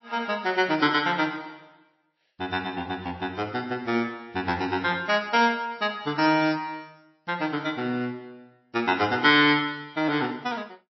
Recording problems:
codec artefacts; MP3, log-spectral distance 3 dB, nothing above 5.7 kHz

